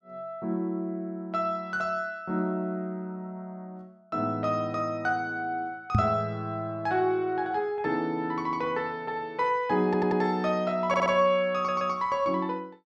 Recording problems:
microphone bump; at 6 s; peak +7 dB vs average level
audio stuttering; at 10 s, at 11 s and at 12 s

